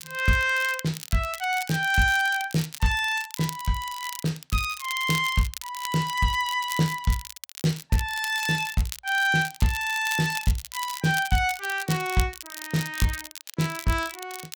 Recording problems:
crackling; vinyl, SNR 12 dB

